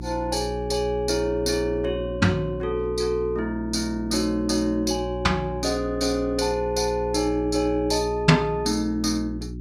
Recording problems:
hum; 60 Hz, harmonics up to 360 Hz, SNR 10 dB

